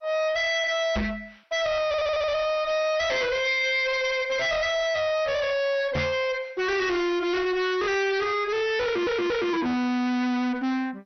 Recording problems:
lossy codec; MP2, log-spectral distance 4 dB, nothing above 6 kHz
distorted audio; soft clipping, signal-to-distortion ratio 5 dB
knock on the microphone; at 1 s and at 6 s; peak +2 dB vs average level
stutter; at 2 s and at 9 s

